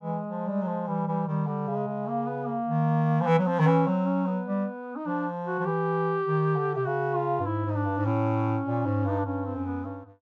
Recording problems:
none

